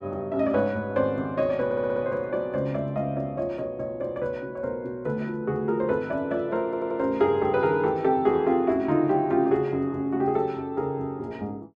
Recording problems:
audio stuttering; at 1.5 s and at 6.5 s

